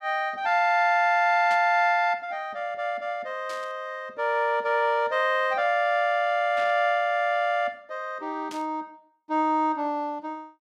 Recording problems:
burst of static; 4 times, first at 1.5 s; peak -11 dB vs average level

